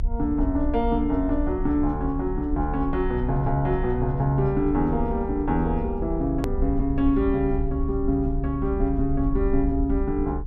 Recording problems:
low-pass filter; nothing above 8 kHz
low-frequency rumble; below 64 Hz, SNR 6 dB
edit click; at 6.5 s

